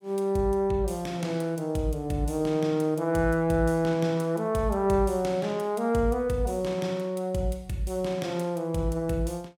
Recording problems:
none

